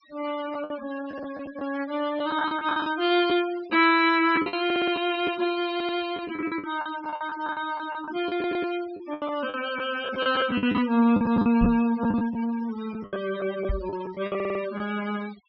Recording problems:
treble cut off; nothing above 5.5 kHz
noise reduction artefacts; signal-to-artefact ratio 16 dB
lost packets; 12% of the sound replaced, filled with the last packet
audio stuttering; 4 times, first at 4.5 s
knock on the microphone; at 12 s and at 14 s; peak +2 dB vs average level

